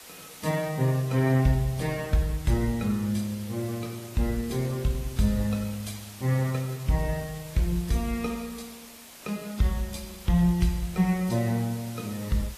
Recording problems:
lossy codec; AAC, log-spectral distance 6 dB, nothing above 14.7 kHz
background hiss; slope -1 dB per octave, SNR 17 dB

